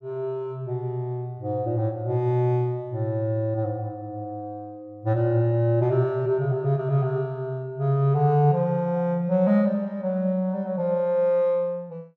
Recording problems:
none

